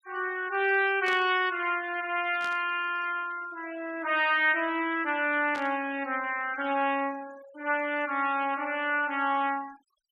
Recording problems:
noise reduction artefacts; signal-to-artefact ratio 22 dB
static burst; at 1 s, at 2.5 s and at 5.5 s; peak -7 dB vs average level

